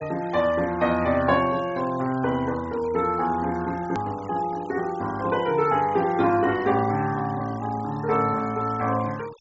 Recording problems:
treble cut off; nothing above 8 kHz
denoising artefacts; signal-to-artefact ratio 20 dB
hard cut with a click; at 4 s

